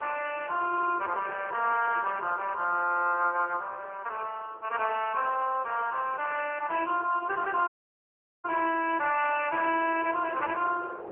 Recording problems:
telephone audio; 300 Hz to 3.1 kHz, AMR-NB
wind noise; below 750 Hz, SNR 17 dB
dropout; at 7.5 s for 1 s

